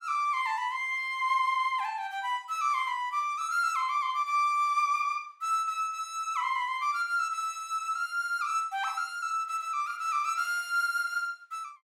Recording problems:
none

